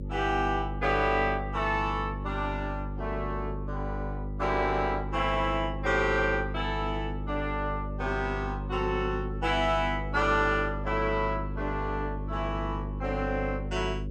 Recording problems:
electrical hum; 50 Hz, harmonics up to 550 Hz, SNR 6 dB

